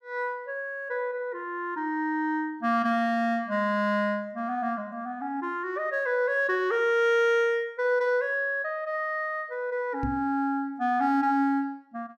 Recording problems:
microphone bump; at 10 s; peak -2 dB vs average level

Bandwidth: 14.5 kHz